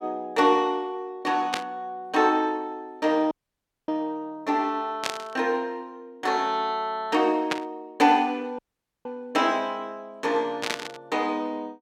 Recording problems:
static burst; 4 times, first at 1.5 s; peak +3 dB vs average level
dropout; at 3.5 s for 0.5 s and at 8.5 s

